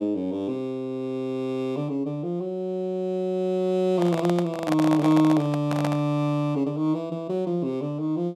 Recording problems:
microphone handling noise; from 4 to 6 s; peak +1 dB vs average level

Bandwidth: 13.5 kHz